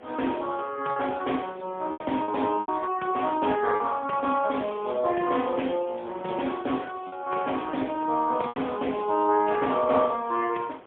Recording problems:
phone line; 240 Hz to 3.5 kHz, AMR-NB, then MP3
wind on the microphone; below 1.1 kHz, SNR 21 dB
packet loss; 4% of the sound replaced, filled with repeated pitch periods

